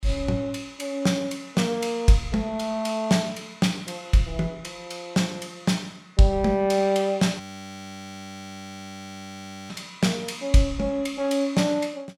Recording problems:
audio freezing; at 7.5 s for 2.5 s

